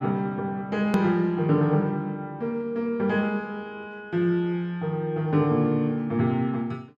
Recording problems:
edit click; at 1 s

